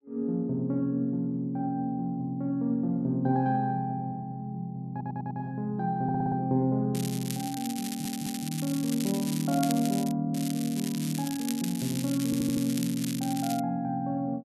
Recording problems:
stutter; 4 times, first at 5 s
crackle; from 7 to 10 s and from 10 to 14 s; loose cable, SNR 9 dB

